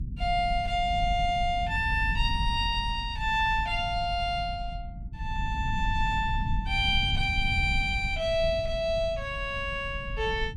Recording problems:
low-frequency rumble; below 94 Hz, SNR 7 dB

